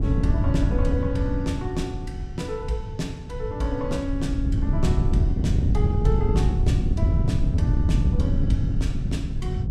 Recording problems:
wind noise; below 130 Hz, SNR -6 dB

